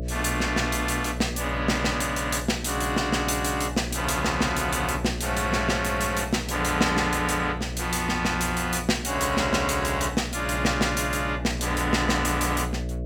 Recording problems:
electrical hum; 60 Hz, harmonics up to 660 Hz, SNR 9 dB

